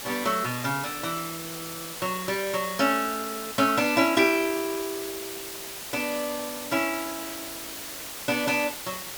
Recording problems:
background hiss; slope -1 dB per octave, SNR 8 dB

